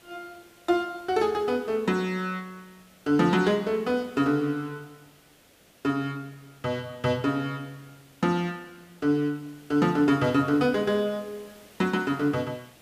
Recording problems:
background hiss; SNR 27 dB

